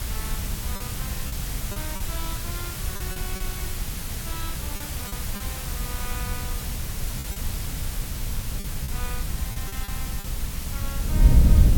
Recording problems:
electrical hum; 50 Hz, harmonics up to 800 Hz, SNR 19 dB
hiss; slope -1 dB per octave, SNR -8 dB
wind noise; below 82 Hz, SNR -12 dB
lost packets; 6% of the sound replaced, filled with repeated pitch periods

